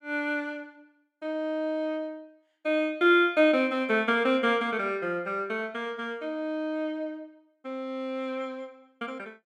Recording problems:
none

